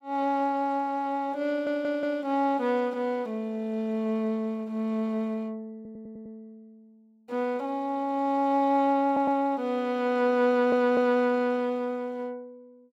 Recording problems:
stutter; 4 times, first at 1.5 s

